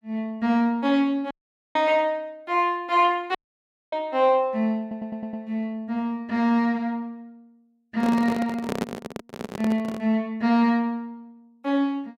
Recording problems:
audio cutting out; at 1.5 s and at 3.5 s for 0.5 s
audio stuttering; at 5 s
handling noise; from 8 to 10 s; peak +1 dB vs average level

